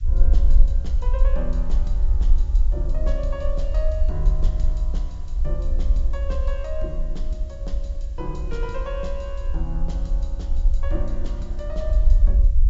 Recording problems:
treble cut off; nothing above 8 kHz
hiss; SNR 27 dB
rumble; below 48 Hz, SNR -10 dB

